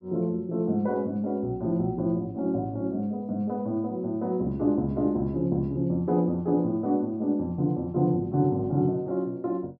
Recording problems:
none

